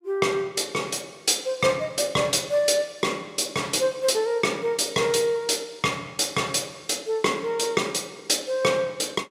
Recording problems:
none

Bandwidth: 16 kHz